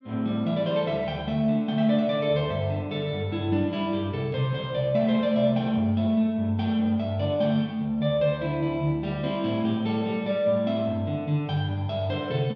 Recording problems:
none

